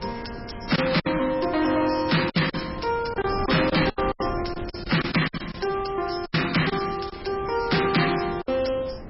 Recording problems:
lossy compression; MP3, log-spectral distance 10 dB, nothing above 5.5 kHz
distortion; soft clipping, signal-to-distortion ratio 6 dB
wind on the microphone; below 500 Hz, SNR 14 dB
packet loss; 9% of the sound replaced, filled with silence
crackle; from 3.5 to 8 s; loose cable, SNR 23 dB

